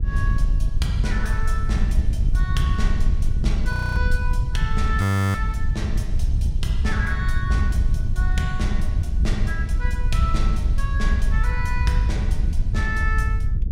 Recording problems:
wind noise; below 80 Hz, SNR -6 dB
frozen audio; at 3.5 s and at 5 s

